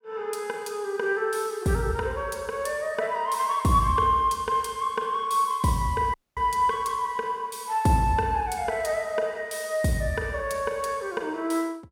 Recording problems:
audio cutting out; at 6 s

